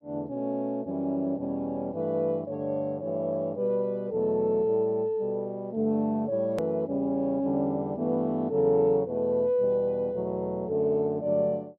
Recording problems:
treble cut off; nothing above 5.6 kHz
hard cut with a click; at 6.5 s

